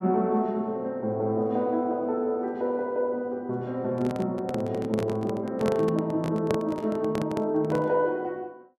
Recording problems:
handling noise; from 4 to 8 s; peak +2 dB vs average level

